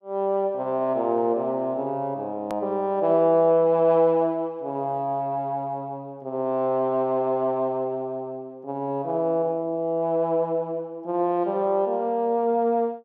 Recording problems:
hard cut with a click; at 2.5 s

